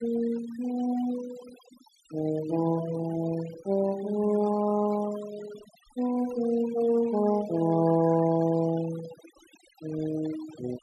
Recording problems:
denoising artefacts; signal-to-artefact ratio 17 dB

